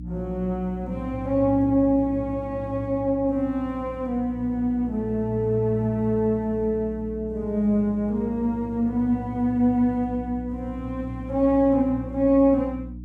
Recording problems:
hum; 60 Hz, harmonics up to 300 Hz, SNR 14 dB

